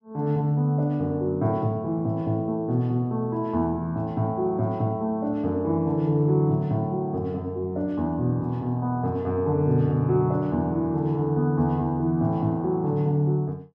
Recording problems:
none

